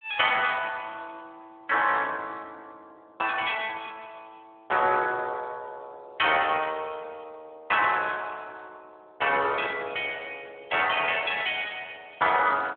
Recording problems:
phone line; 280 Hz to 3.5 kHz, Speex

